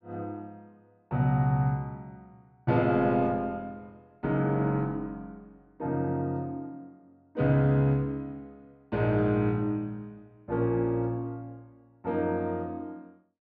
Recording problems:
none

